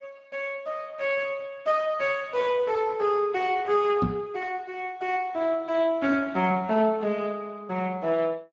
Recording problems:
lossy codec; Speex, log-spectral distance 3 dB
microphone bump; at 4 s; peak +4 dB vs average level

